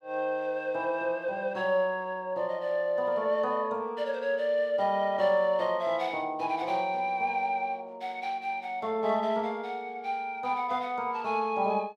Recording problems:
none

